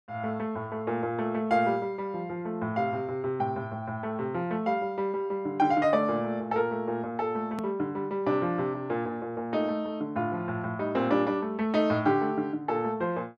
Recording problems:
click at an edit; at 7.5 s

